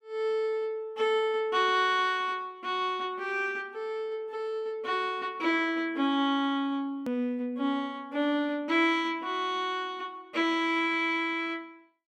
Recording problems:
edit click; at 7 s

